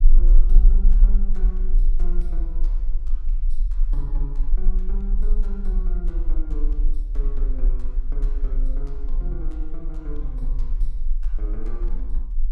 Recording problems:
rumble; below 36 Hz, strongest tone 22 Hz, SNR -15 dB

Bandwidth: 15.5 kHz